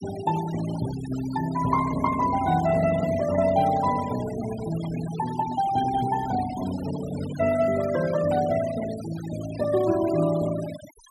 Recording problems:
noise reduction artefacts; signal-to-artefact ratio 14 dB

